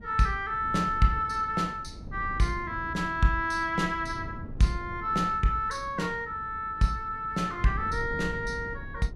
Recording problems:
wind on the microphone; below 170 Hz, SNR 14 dB

